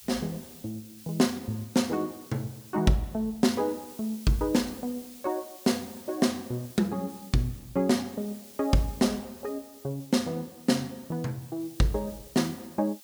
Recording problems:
background hiss; slope +2 dB per octave, SNR 19 dB

